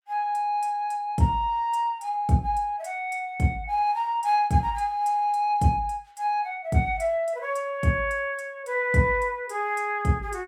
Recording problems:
none

